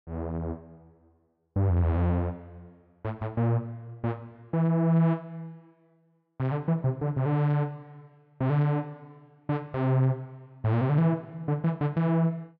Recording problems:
none

